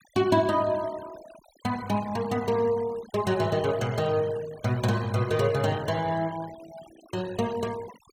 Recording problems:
denoising artefacts; signal-to-artefact ratio 19 dB

